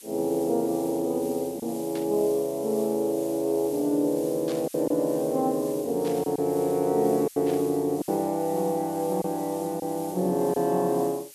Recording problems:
hiss; slope +5 dB per octave, SNR 17 dB
lost packets; 3% of the sound replaced, filled with silence
burst of static; 4 times, first at 2 s; peak -11 dB vs average level

